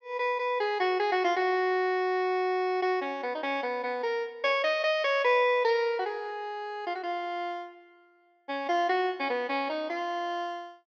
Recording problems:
treble missing; nothing above 8 kHz

